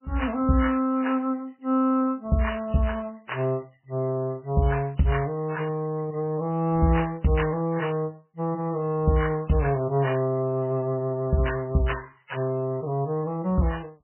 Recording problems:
lossy compression; MP3, log-spectral distance 6 dB, nothing above 3 kHz

